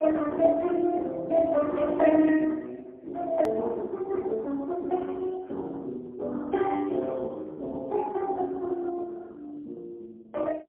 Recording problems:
telephone audio; 240 Hz to 3.2 kHz, AMR-NB, then MP3
edit click; at 3.5 s

